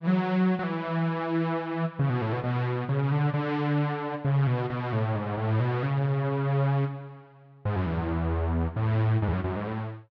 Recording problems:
none

